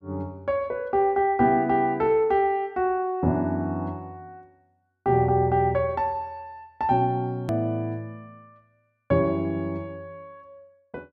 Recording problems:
click at an edit; at 7.5 s

